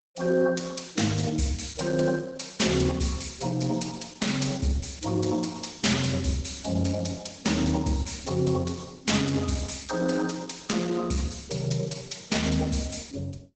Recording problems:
lossy codec; Opus, log-spectral distance 6 dB, nothing above 8 kHz

